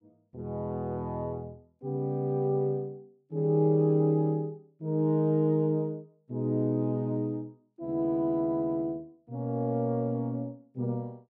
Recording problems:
none

